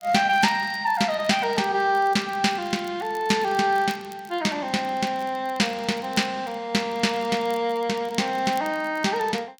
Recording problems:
crackling; vinyl, SNR 26 dB

